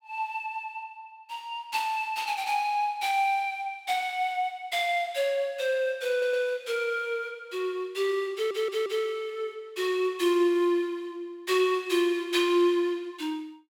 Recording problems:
audio stuttering; at 6 s and at 8.5 s

